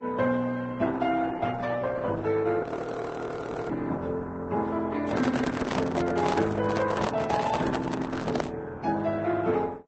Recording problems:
codec artefacts; Opus, then Vorbis, log-spectral distance 3 dB, nothing above 8 kHz
audio freezing; at 2.5 s for 1 s
microphone handling noise; from 5 to 8.5 s; peak +2 dB vs average level

